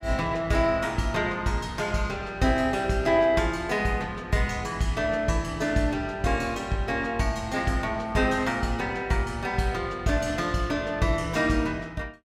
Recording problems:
none

